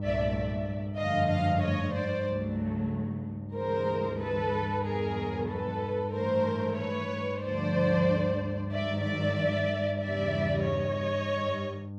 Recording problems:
hum; 50 Hz, harmonics up to 900 Hz, SNR 6 dB

